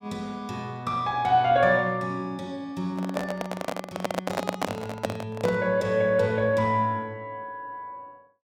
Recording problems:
microphone handling noise; from 3 to 5.5 s; peak +3 dB vs average level

